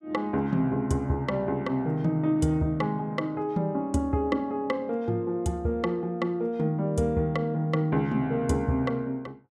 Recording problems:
none

